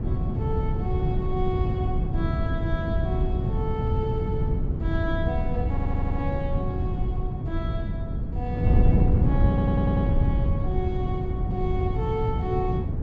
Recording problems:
treble missing; nothing above 8 kHz
wind on the microphone; below 150 Hz, SNR -6 dB
audio stuttering; at 5.5 s and at 9.5 s

